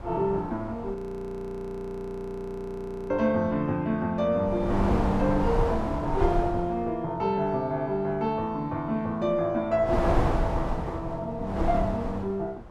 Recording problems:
wind on the microphone; below 670 Hz, SNR 3 dB
frozen audio; at 1 s for 2 s

